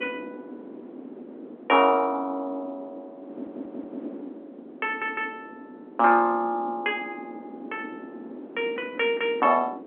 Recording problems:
telephone audio; 220 Hz to 3.7 kHz, G.711
wind on the microphone; below 430 Hz, SNR 16 dB
stutter; at 3.5 s and at 5 s

